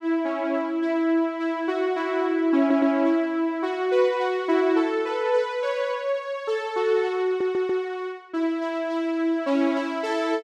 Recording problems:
audio stuttering; at 2.5 s and at 7.5 s

